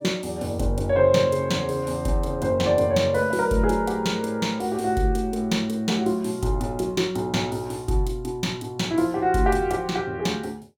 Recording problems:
none

